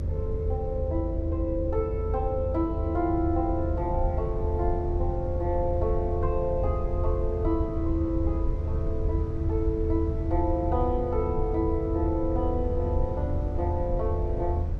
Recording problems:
hum; 50 Hz, harmonics up to 600 Hz, SNR 8 dB
low-frequency rumble; below 82 Hz, SNR 1 dB

